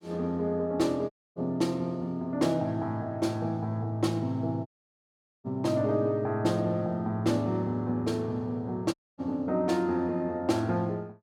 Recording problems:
audio cutting out; at 1 s, at 4.5 s for 1 s and at 9 s

